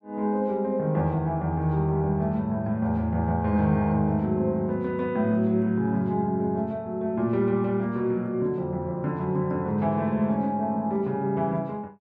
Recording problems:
none

